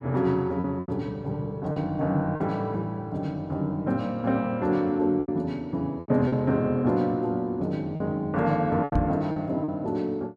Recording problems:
lost packets; 6% of the sound replaced, filled with repeated pitch periods
microphone thump; at 9 s; peak +4 dB vs average level

